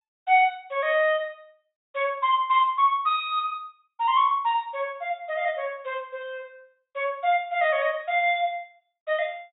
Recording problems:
low-pass filter; nothing above 4 kHz

